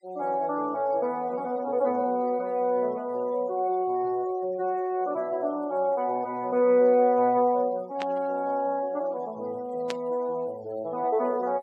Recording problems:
noise reduction artefacts; signal-to-artefact ratio 28 dB
static burst; at 8 s and at 10 s; peak -4 dB vs average level

